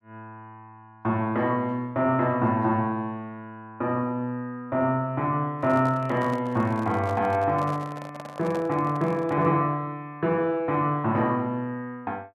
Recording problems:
microphone handling noise; from 5.5 to 9.5 s; peak -7 dB vs average level

